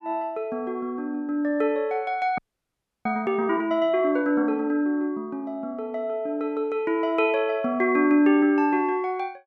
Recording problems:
audio freezing; at 2.5 s for 0.5 s

